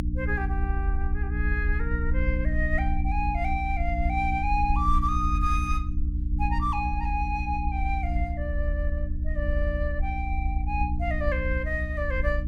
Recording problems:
hum; 60 Hz, harmonics up to 300 Hz, SNR 2 dB
rumble; below 72 Hz, SNR 0 dB

